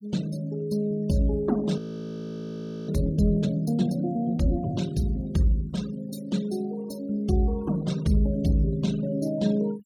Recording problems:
denoising artefacts; signal-to-artefact ratio 20 dB
audio freezing; at 2 s for 1 s

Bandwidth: 17 kHz